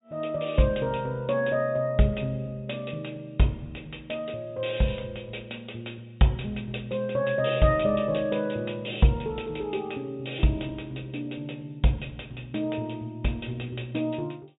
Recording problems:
treble missing; nothing above 4 kHz

